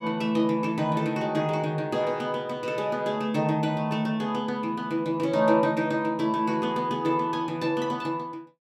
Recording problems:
none

